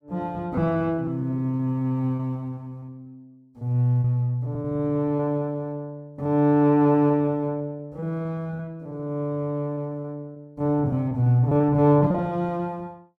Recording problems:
lost packets; 14% of the sound replaced, filled with repeated pitch periods

